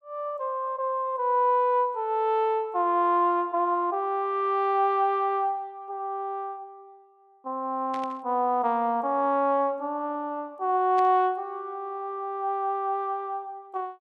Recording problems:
static burst; at 8 s and at 11 s; peak -12 dB vs average level

